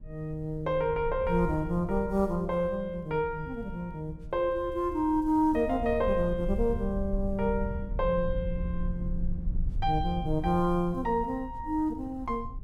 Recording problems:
low-frequency rumble; below 72 Hz, SNR 9 dB

